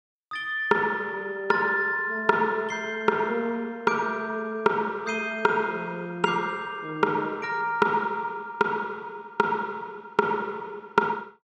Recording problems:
none

